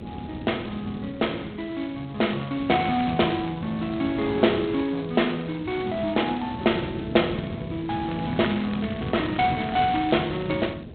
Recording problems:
telephone audio; 280 Hz to 3.9 kHz, G.726
wind on the microphone; below 320 Hz, SNR 11 dB
crackle; at 2.5 s and from 8 to 10 s; loose cable, SNR 18 dB

